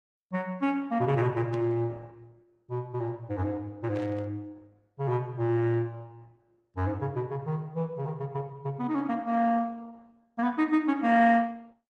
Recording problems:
lossy codec; Opus, log-spectral distance 2 dB
burst of static; at 1.5 s and at 4 s; peak -15 dB vs average level

